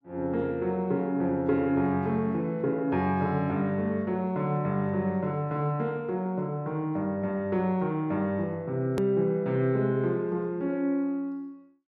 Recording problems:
click at an edit; at 9 s

